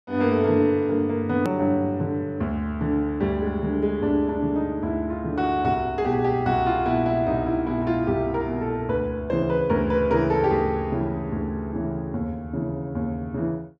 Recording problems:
edit click; at 1.5 s

